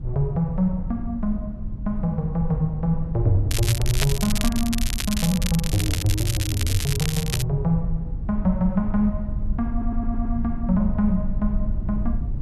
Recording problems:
rumble; below 76 Hz, SNR 5 dB
crackling; from 3.5 to 7.5 s; loose cable, SNR 4 dB
audio stuttering; at 9.5 s

